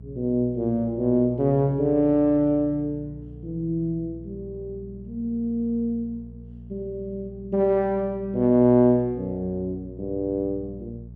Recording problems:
mains hum; 60 Hz, harmonics up to 420 Hz, SNR 18 dB

